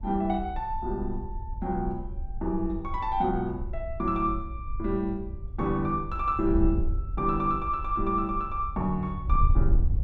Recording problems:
wind on the microphone; below 66 Hz, SNR 5 dB

